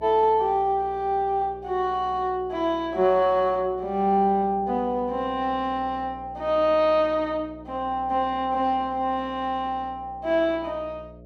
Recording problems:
hum; 60 Hz, harmonics up to 660 Hz, SNR 22 dB

